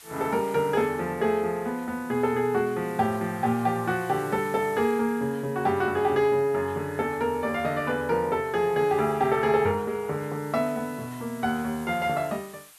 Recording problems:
hiss; SNR 22 dB

